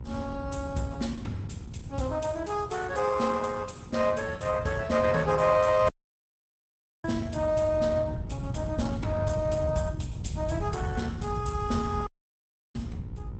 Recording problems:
codec artefacts; Opus, log-spectral distance 3 dB, nothing above 8 kHz
hum; 60 Hz, harmonics up to 1.9 kHz, SNR 23 dB
wind on the microphone; below 140 Hz, SNR 8 dB
dropout; at 6 s for 1 s and at 12 s for 0.5 s

